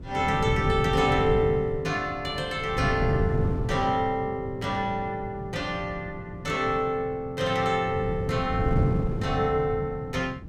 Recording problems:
wind noise; below 190 Hz, SNR 5 dB

